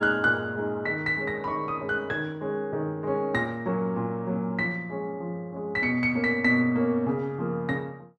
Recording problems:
none

